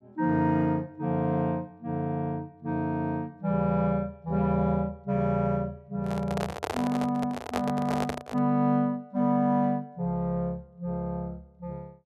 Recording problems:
microphone handling noise; from 6 to 8.5 s; peak +2 dB vs average level

